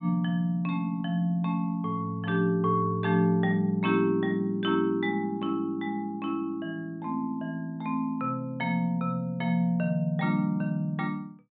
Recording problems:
treble missing; nothing above 4 kHz

